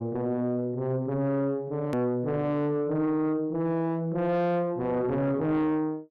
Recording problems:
distorted audio; soft clipping, signal-to-distortion ratio 5 dB
click at an edit; at 2 s

